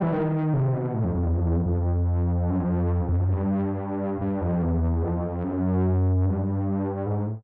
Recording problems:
distortion; soft clipping, signal-to-distortion ratio 7 dB

